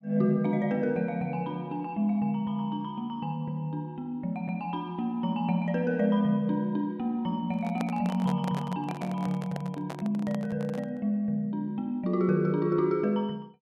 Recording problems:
microphone handling noise; from 7.5 to 11 s; peak -3 dB vs average level

